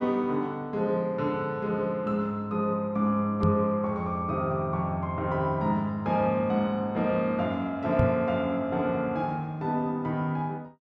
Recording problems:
knock on the microphone; at 3.5 s and at 8 s; peak +6 dB vs average level

